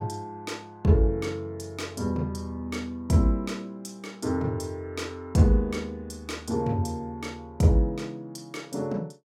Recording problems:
none

